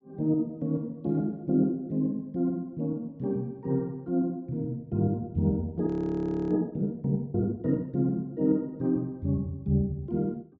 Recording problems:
low-pass filter; nothing above 8 kHz
frozen audio; at 6 s for 0.5 s

